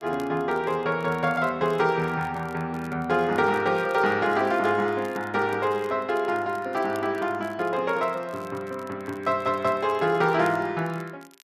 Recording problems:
crackle; vinyl, SNR 28 dB

